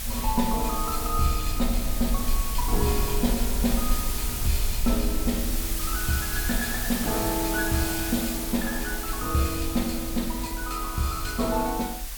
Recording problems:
hiss; slope +1 dB per octave, SNR 3 dB
low-frequency rumble; below 46 Hz, SNR 5 dB

